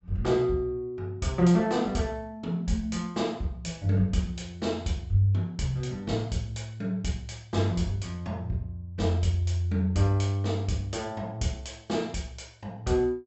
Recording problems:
treble cut off; nothing above 7.7 kHz

